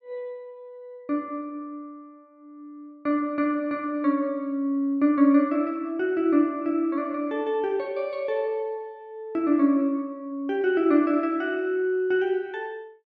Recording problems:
none

